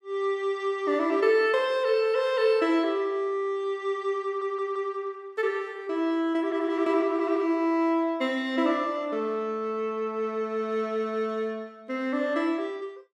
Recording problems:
audio stuttering; at 4.5 s

